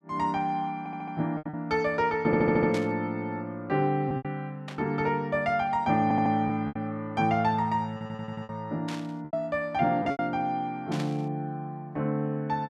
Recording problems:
lost packets; 5% of the sound replaced, filled with repeated pitch periods
stutter; 4 times, first at 1 s
burst of static; 4 times, first at 2.5 s; peak -6 dB vs average level

